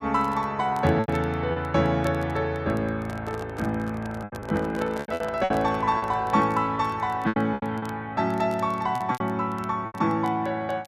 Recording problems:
crackling; vinyl, SNR 28 dB
packet loss; 8% of the sound replaced, filled with repeated pitch periods
handling noise; from 3 to 6 s; peak -5 dB vs average level

